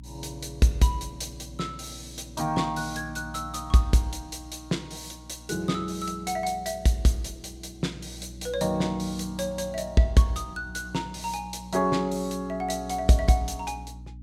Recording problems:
hum; 60 Hz, harmonics up to 300 Hz, SNR 17 dB

